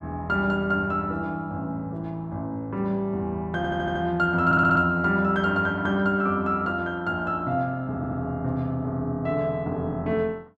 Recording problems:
stutter; at 3.5 s, at 4.5 s and at 8 s

